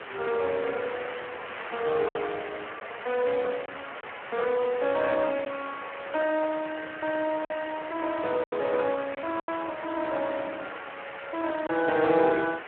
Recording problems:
telephone audio; 340 Hz to 2.8 kHz, Speex
background hiss; SNR 10 dB
packet loss; 3% of the sound replaced, filled with silence

